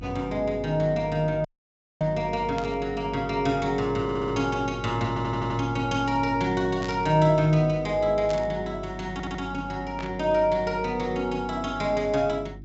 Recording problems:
treble missing; nothing above 7.7 kHz
hum; 50 Hz, harmonics up to 350 Hz, SNR 15 dB
audio cutting out; at 1.5 s for 0.5 s
burst of static; 4 times, first at 2.5 s; peak -9 dB vs average level
audio stuttering; at 4 s, at 5 s and at 9 s

